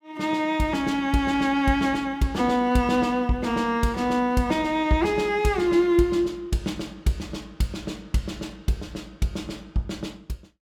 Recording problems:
none

